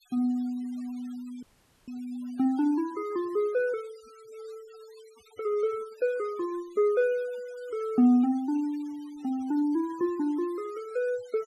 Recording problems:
denoising artefacts; signal-to-artefact ratio 26 dB
dropout; at 1.5 s

